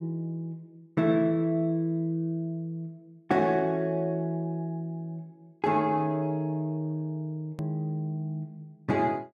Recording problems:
edit click; at 7.5 s

